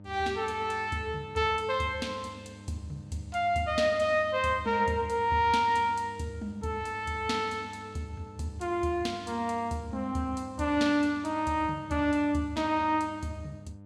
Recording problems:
hum; 50 Hz, harmonics up to 900 Hz, SNR 19 dB

